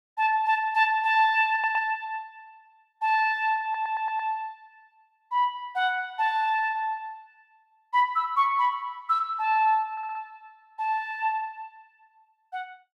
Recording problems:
audio stuttering; at 1.5 s, at 3.5 s and at 10 s

